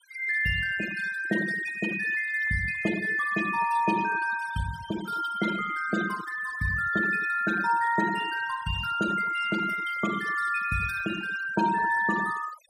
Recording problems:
denoising artefacts; signal-to-artefact ratio 11 dB

